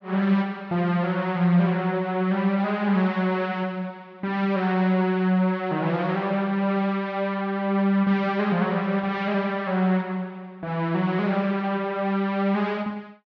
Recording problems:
none

